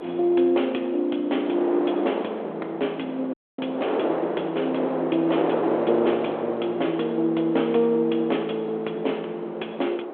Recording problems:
telephone audio; 280 Hz to 3.6 kHz, G.726
wind on the microphone; below 730 Hz, SNR 4 dB
audio cutting out; at 3.5 s

